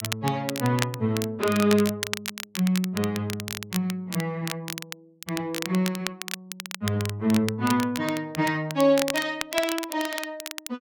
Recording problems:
crackle; vinyl, SNR 8 dB

